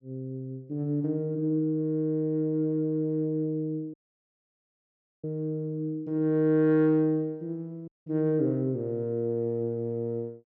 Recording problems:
dropout; at 4 s for 1.5 s and at 8 s

